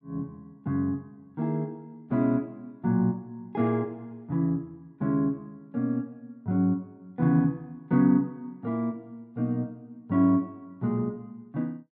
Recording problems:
none

